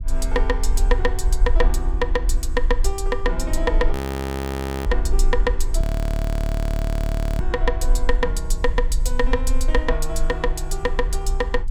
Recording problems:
low-frequency rumble; below 44 Hz, SNR -2 dB
audio freezing; at 4 s for 1 s and at 6 s for 1.5 s

